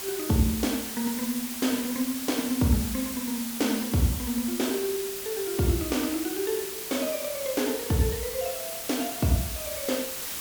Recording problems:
hiss; slope 0 dB per octave, SNR 5 dB

